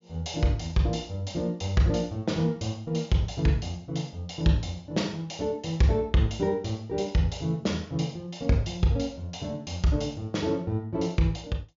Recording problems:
treble cut off; nothing above 7.2 kHz

